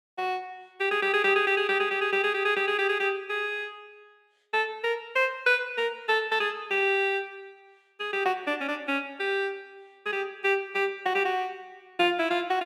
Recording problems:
none

